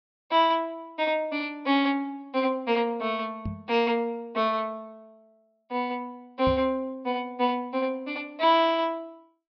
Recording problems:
treble missing; nothing above 5.5 kHz
microphone bump; at 3.5 s and at 6.5 s; peak -2 dB vs average level

